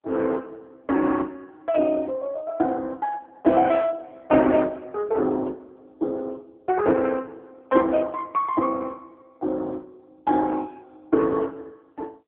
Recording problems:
telephone audio; 260 Hz to 3.1 kHz, AMR-NB

